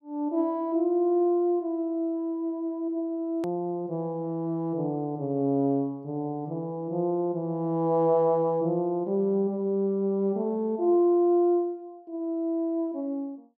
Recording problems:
edit click; at 3.5 s

